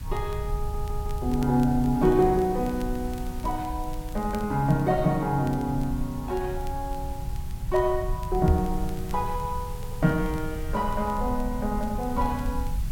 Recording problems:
hiss; slope -2 dB per octave, SNR 20 dB
rumble; below 76 Hz, SNR 8 dB
crackling; vinyl, SNR 27 dB
stutter; at 0.5 s and at 9.5 s
microphone thump; at 8.5 s; peak +8 dB vs average level

